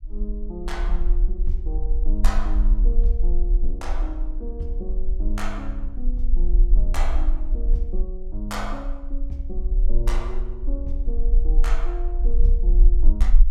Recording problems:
rumble; below 40 Hz, SNR -9 dB

